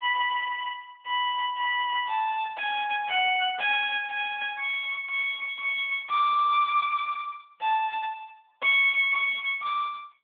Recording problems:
phone line; 520 Hz to 3.5 kHz, AMR-NB

